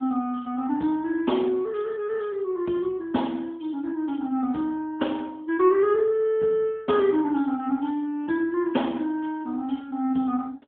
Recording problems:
phone line; 170 Hz to 3.4 kHz, AMR-NB

